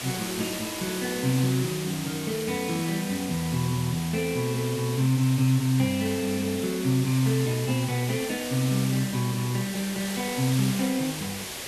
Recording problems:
background hiss; SNR 8 dB

